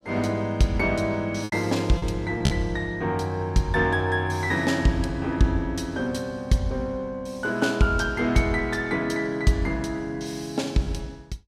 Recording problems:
lost packets; 2% of the sound replaced, filled with repeated pitch periods

